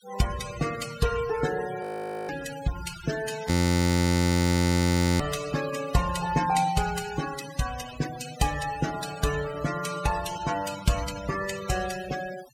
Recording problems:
denoising artefacts; signal-to-artefact ratio 11 dB
frozen audio; at 2 s and at 3.5 s for 1.5 s

